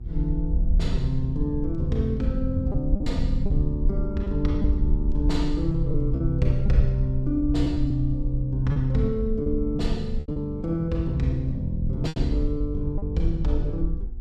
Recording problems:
hum; 60 Hz, harmonics up to 840 Hz, SNR 22 dB
rumble; below 58 Hz, SNR 3 dB
lost packets; 5% of the sound replaced, filled with repeated pitch periods

